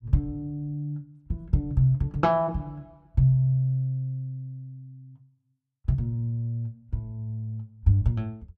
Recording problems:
none

